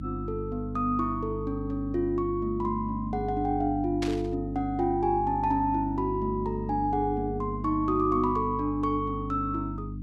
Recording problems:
hum; 50 Hz, harmonics up to 300 Hz, SNR 7 dB
burst of static; at 4 s; peak -3 dB vs average level

